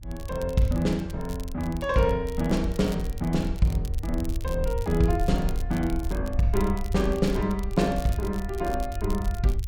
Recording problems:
low-frequency rumble; below 70 Hz, SNR 6 dB
crackle; vinyl, SNR 20 dB

